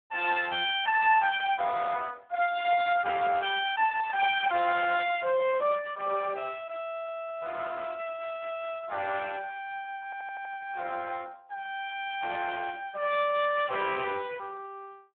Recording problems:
telephone audio; 300 Hz to 3.5 kHz, Speex
audio stuttering; at 10 s

